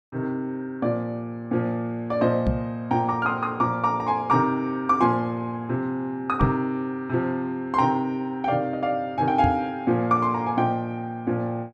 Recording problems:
microphone thump; at 2.5 s, at 6.5 s and at 9.5 s; peak +5 dB vs average level

